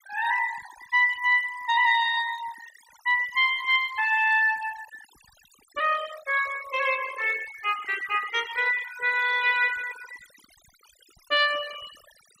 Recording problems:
denoising artefacts; signal-to-artefact ratio 16 dB

